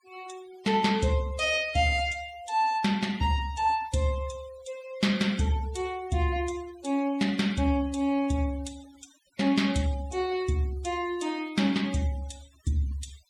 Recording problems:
noise reduction artefacts; signal-to-artefact ratio 21 dB

